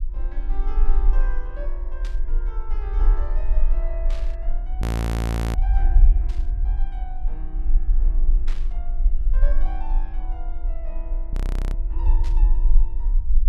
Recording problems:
rumble; below 42 Hz, SNR -17 dB
static burst; 5 times, first at 2 s; peak +3 dB vs average level
frozen audio; at 5 s for 0.5 s and at 11 s

